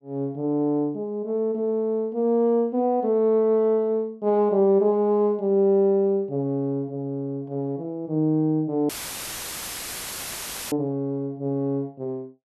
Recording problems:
audio cutting out; at 9 s for 2 s; filled with static

